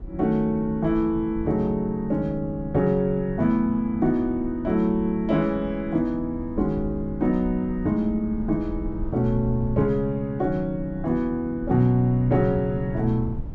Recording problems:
rumble; below 88 Hz, SNR 15 dB
wind noise; below 260 Hz, SNR 18 dB

